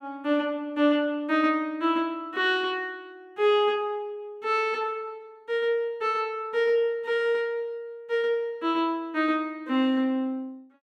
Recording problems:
none

